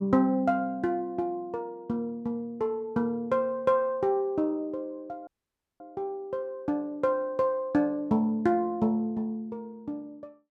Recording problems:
audio cutting out; at 5.5 s for 0.5 s

